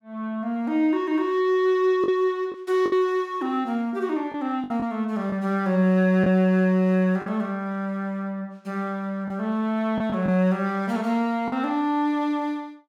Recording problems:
lost packets; 3% of the sound replaced, filled with the last packet

